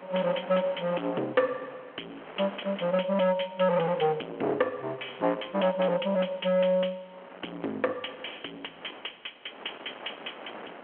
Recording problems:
telephone audio; 220 Hz to 3.2 kHz, G.726
distortion; hard clipping, signal-to-distortion ratio 8 dB
wind on the microphone; below 1.6 kHz, SNR 17 dB

